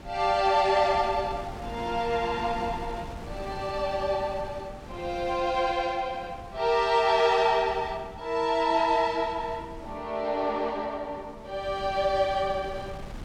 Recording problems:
wind noise; below 500 Hz, SNR 16 dB

